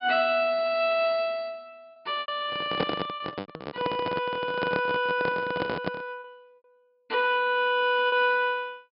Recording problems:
treble missing; nothing above 5.5 kHz
packet loss; 3% of the sound replaced, filled with repeated pitch periods
handling noise; from 2.5 to 6 s; peak +3 dB vs average level

